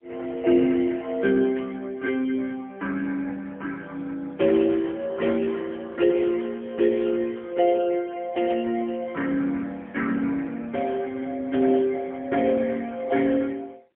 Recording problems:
phone line; 260 Hz to 3.1 kHz, AMR-NB, then MP3
burst of static; at 1.5 s, at 4.5 s and at 8.5 s; peak -13 dB vs average level

